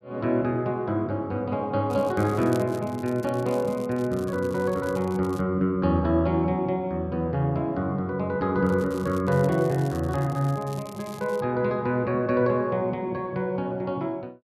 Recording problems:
crackle; from 2 to 5.5 s and from 8.5 to 11 s; loose cable, SNR 23 dB

